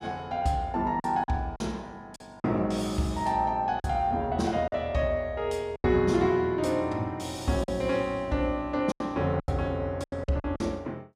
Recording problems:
lost packets; 7% of the sound replaced, filled with silence

